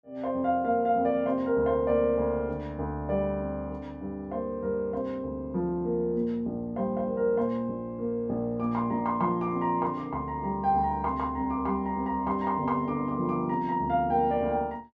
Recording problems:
none

